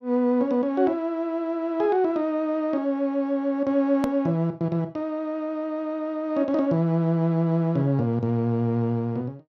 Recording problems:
treble cut off; nothing above 8 kHz
click at an edit; at 4 s

